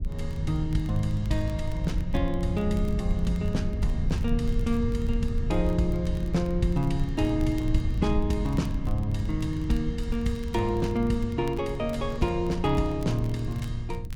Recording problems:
rumble; below 94 Hz, SNR 4 dB
crackling; vinyl, SNR 26 dB

